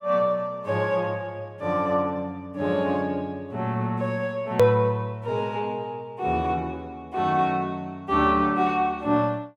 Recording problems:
edit click; at 4.5 s

